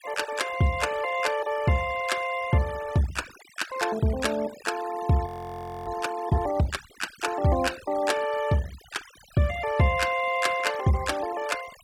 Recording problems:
denoising artefacts; signal-to-artefact ratio 16 dB
audio freezing; at 5.5 s for 0.5 s

